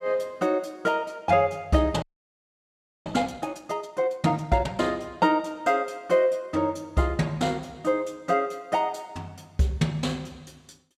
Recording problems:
audio freezing; at 2 s for 1 s

